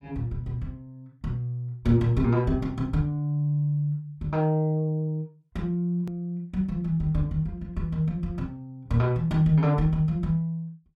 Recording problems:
edit click; at 6 s

